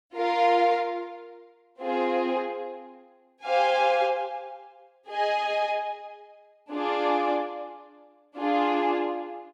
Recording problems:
none

